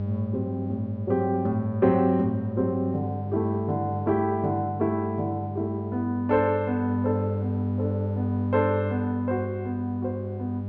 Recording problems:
hum; 50 Hz, harmonics up to 600 Hz, SNR 5 dB

